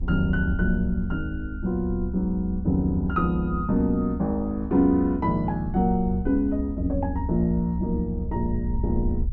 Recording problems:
low-frequency rumble; below 70 Hz, SNR 8 dB

